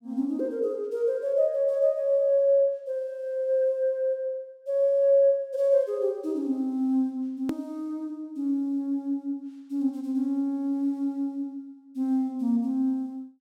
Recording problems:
click at an edit; at 7.5 s

